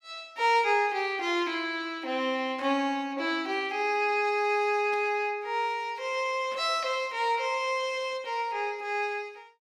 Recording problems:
burst of static; at 2.5 s, at 5 s and at 6.5 s; peak -14 dB vs average level

